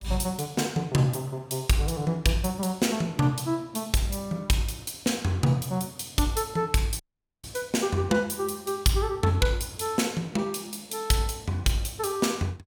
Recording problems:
dropout; at 7 s

